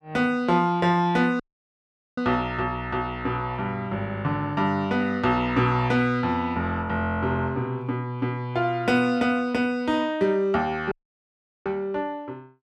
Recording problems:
audio cutting out; at 1.5 s for 1 s and at 11 s for 0.5 s

